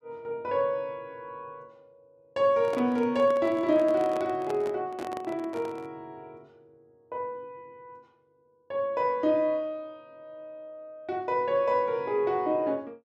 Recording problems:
handling noise; from 2.5 to 6 s; peak -6 dB vs average level

